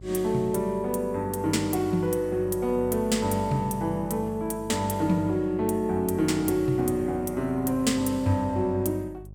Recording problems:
electrical hum; 50 Hz, harmonics up to 550 Hz, SNR 18 dB

